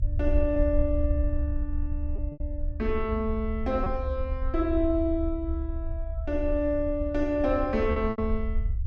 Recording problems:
rumble; below 70 Hz, SNR 3 dB
packet loss; 3% of the sound replaced, filled with repeated pitch periods

